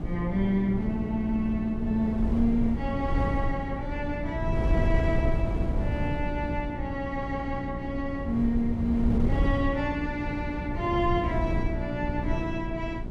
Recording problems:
electrical hum; 60 Hz, harmonics up to 1.1 kHz, SNR 9 dB
wind noise; below 140 Hz, SNR 2 dB

